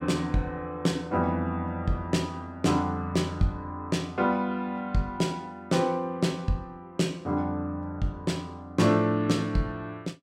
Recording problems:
none

